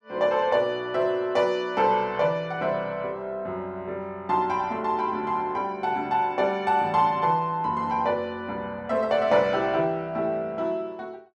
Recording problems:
none

